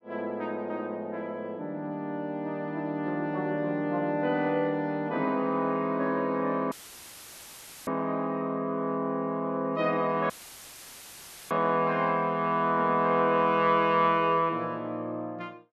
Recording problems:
audio cutting out; at 6.5 s for 1 s and at 10 s for 1 s; filled with static

